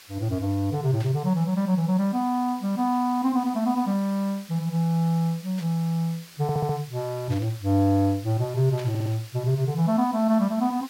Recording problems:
background hiss; slope +2 dB per octave, SNR 21 dB
burst of static; 4 times, first at 1 s; peak -12 dB vs average level
stutter; at 6.5 s and at 9 s

